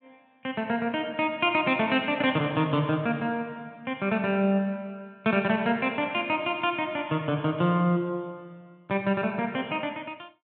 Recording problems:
treble cut off; nothing above 4 kHz

